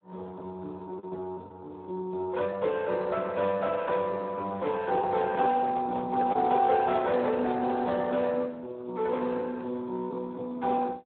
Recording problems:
telephone audio; 130 Hz to 2.6 kHz, Speex
lost packets; 1.1% of the sound replaced, filled with the last packet
microphone handling noise; from 4.5 to 8 s; peak -5 dB vs average level

